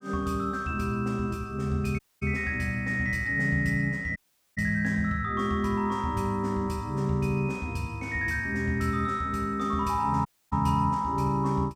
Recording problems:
audio cutting out; at 2 s, at 4 s and at 10 s

